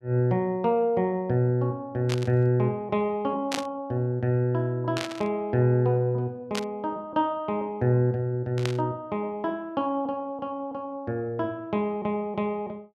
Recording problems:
static burst; 5 times, first at 2 s; peak +1 dB vs average level

